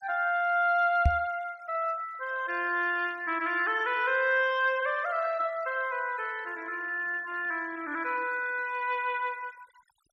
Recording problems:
denoising artefacts; signal-to-artefact ratio 25 dB
microphone thump; at 1 s; peak +7 dB vs average level

